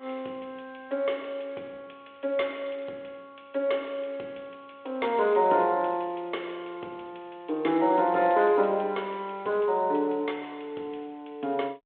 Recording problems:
telephone audio; 300 Hz to 3.5 kHz, G.726

